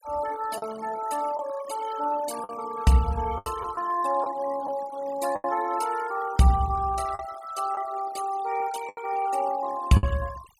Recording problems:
noise reduction artefacts; signal-to-artefact ratio 15 dB
packet loss; 5% of the sound replaced, filled with the last packet

